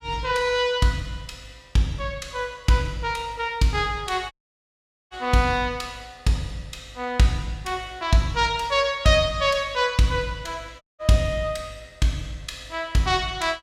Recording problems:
dropout; at 4.5 s for 1 s and at 11 s

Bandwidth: 16 kHz